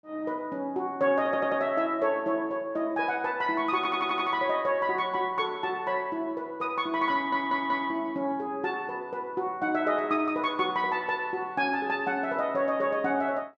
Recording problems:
stutter; at 1.5 s, at 4 s and at 7 s

